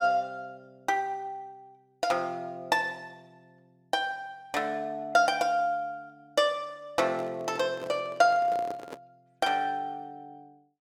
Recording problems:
handling noise; from 7 to 9 s; peak -7 dB vs average level

